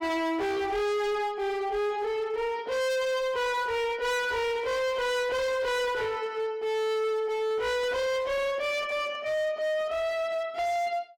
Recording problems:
distorted audio; hard clipping, signal-to-distortion ratio 7 dB

